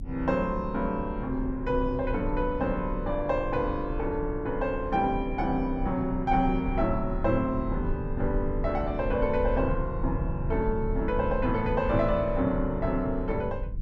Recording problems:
rumble; below 86 Hz, strongest tone 32 Hz, SNR 7 dB

